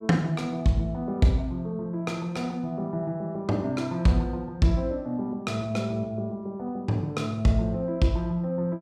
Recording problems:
none

